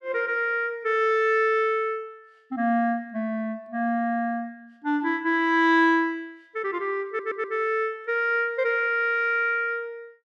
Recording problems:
stutter; at 7 s

